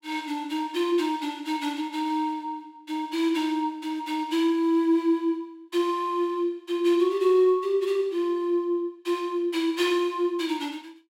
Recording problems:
none

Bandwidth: 16 kHz